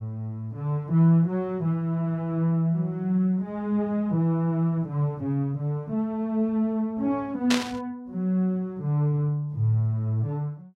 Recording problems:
burst of static; at 7.5 s; peak +4 dB vs average level

